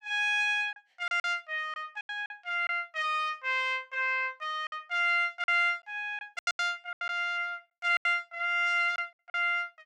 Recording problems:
packet loss; 9% of the sound replaced, filled with silence

